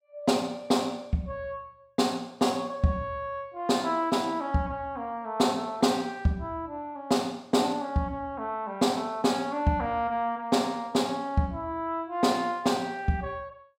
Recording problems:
none

